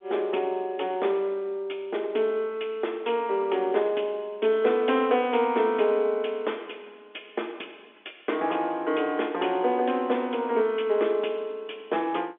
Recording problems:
phone line; 260 Hz to 3.6 kHz, G.711

